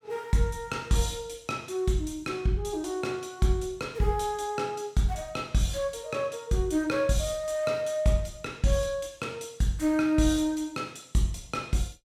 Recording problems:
none

